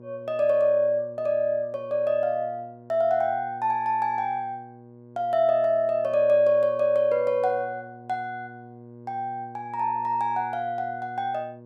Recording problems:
electrical hum; 60 Hz, harmonics up to 1.1 kHz, SNR 21 dB

